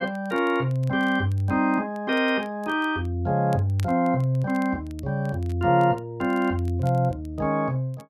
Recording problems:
crackling; vinyl, SNR 29 dB

